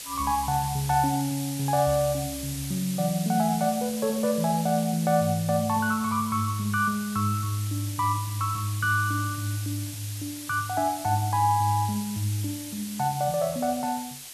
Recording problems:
background hiss; slope +2 dB per octave, SNR 10 dB

